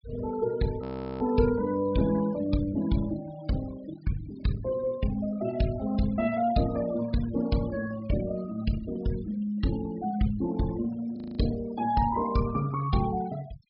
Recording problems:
low-pass filter; nothing above 5.3 kHz
noise reduction artefacts; signal-to-artefact ratio 16 dB
frozen audio; at 1 s and at 11 s

